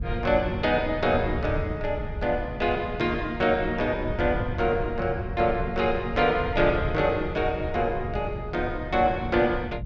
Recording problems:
wind noise; below 120 Hz, SNR 9 dB

